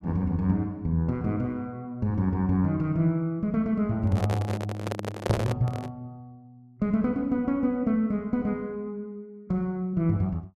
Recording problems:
handling noise; from 4 to 6 s; peak +3 dB vs average level

